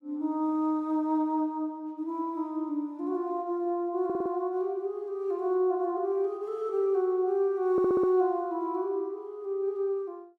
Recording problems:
audio stuttering; at 4 s and at 7.5 s

